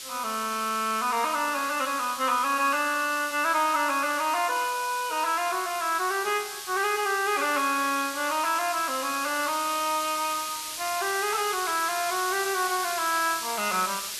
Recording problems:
hiss; slope +3 dB per octave, SNR 7 dB

